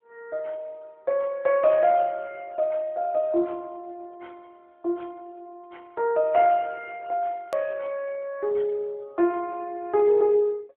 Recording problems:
telephone audio; 220 Hz to 3.4 kHz, AMR-NB
click at an edit; at 7.5 s

